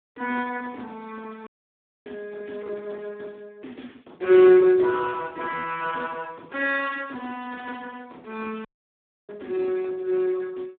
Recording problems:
phone line; 220 Hz to 3.9 kHz, Speex
dropout; at 1.5 s for 0.5 s and at 8.5 s for 0.5 s

